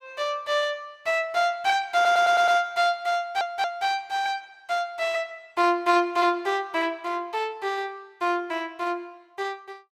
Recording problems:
audio stuttering; at 2 s and at 3 s

